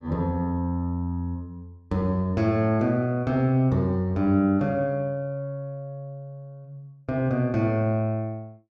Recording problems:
none

